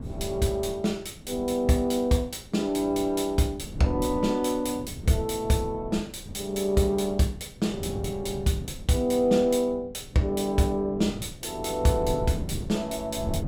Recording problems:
wind noise; below 200 Hz, SNR 13 dB

